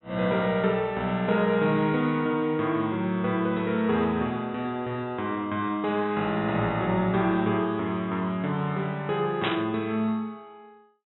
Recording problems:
low-pass filter; nothing above 3.9 kHz
burst of static; at 9.5 s; peak +1 dB vs average level

